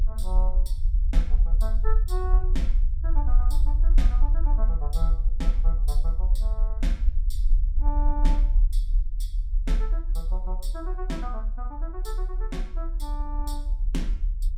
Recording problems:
low-frequency rumble; below 42 Hz, strongest tone 34 Hz, SNR -12 dB

